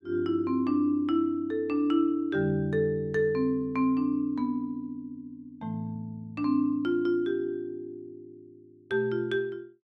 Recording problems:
none

